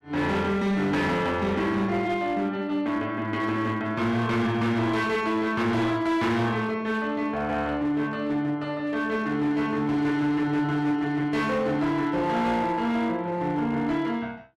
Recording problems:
distortion; hard clipping, uneven, signal-to-distortion ratio 11 dB

